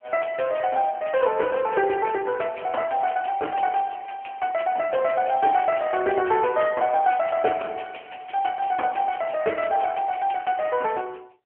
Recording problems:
phone line; 320 Hz to 3.1 kHz, AMR-NB

